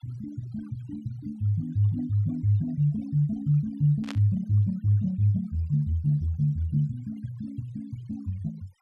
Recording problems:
noise reduction artefacts; signal-to-artefact ratio 28 dB
burst of static; at 4 s; peak -7 dB vs average level

